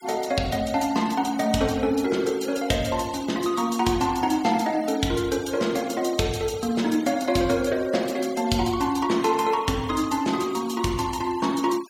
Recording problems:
noise reduction artefacts; signal-to-artefact ratio 18 dB

